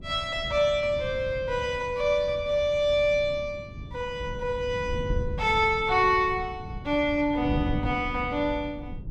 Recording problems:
wind on the microphone; below 160 Hz, SNR 11 dB

